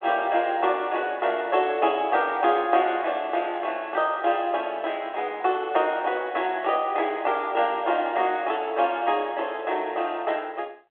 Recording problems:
telephone audio; 300 Hz to 3.6 kHz, G.726

